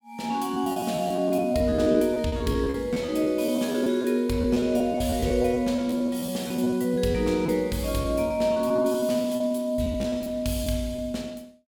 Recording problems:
lost packets; 15% of the sound replaced, filled with repeated pitch periods

